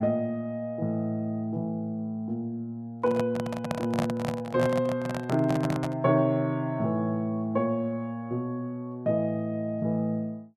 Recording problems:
handling noise; from 3 to 6 s; peak +3 dB vs average level

